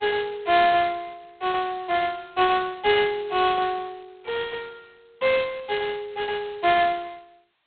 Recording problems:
telephone audio; 370 Hz to 3.7 kHz, G.726

